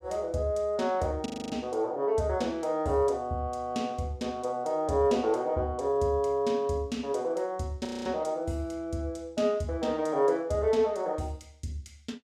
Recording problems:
audio freezing; at 1.5 s and at 8 s

